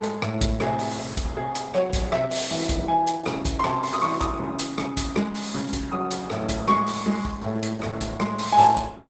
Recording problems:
lossy compression; Opus, log-spectral distance 5 dB, nothing above 7.8 kHz

